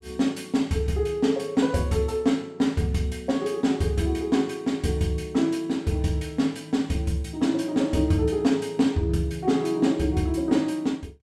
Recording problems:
none

